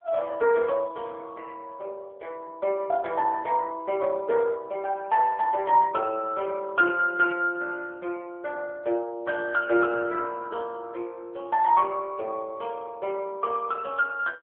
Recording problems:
telephone audio; 280 Hz to 2.2 kHz, AMR-NB

